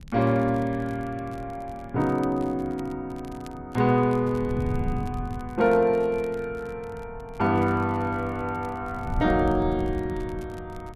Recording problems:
wind on the microphone; below 150 Hz, SNR 12 dB
crackling; vinyl, SNR 29 dB

